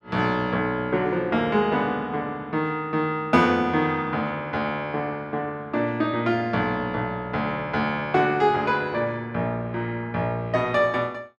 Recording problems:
none

